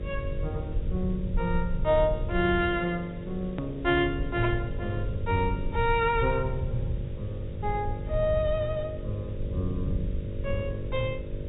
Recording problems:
treble missing; nothing above 4 kHz
hum; 50 Hz, harmonics up to 600 Hz, SNR 13 dB
background hiss; SNR 27 dB
low-frequency rumble; below 98 Hz, SNR 6 dB
edit click; at 3.5 s

